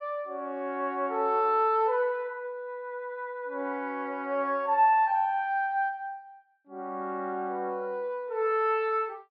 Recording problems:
low-pass filter; nothing above 5.5 kHz

